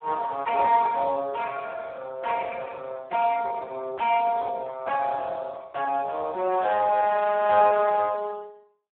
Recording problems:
telephone audio; 320 Hz to 2.3 kHz, Speex

